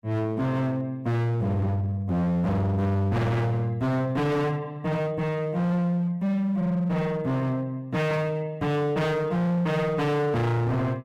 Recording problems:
distorted audio; hard clipping, signal-to-distortion ratio 6 dB

